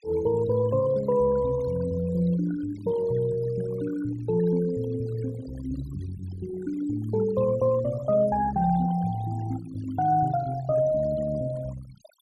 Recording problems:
denoising artefacts; signal-to-artefact ratio 17 dB

